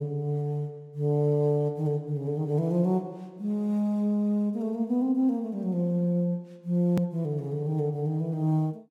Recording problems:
edit click; at 7 s

